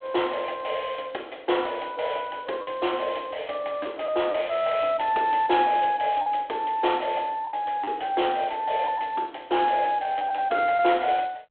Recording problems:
telephone audio; 280 Hz to 3.4 kHz, G.726
lost packets; 3% of the sound replaced, filled with the last packet

